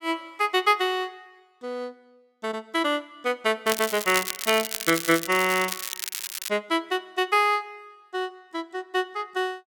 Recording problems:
crackling; from 3.5 to 6.5 s; loose cable, SNR 5 dB

